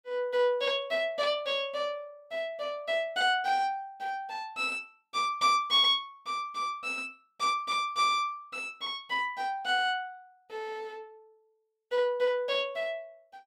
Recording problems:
none

